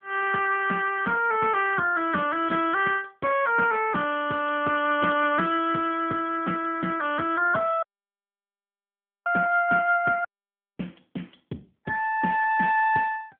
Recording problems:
telephone audio; 190 Hz to 3.2 kHz, AMR-NB
dropout; at 8 s for 1.5 s and at 10 s for 0.5 s

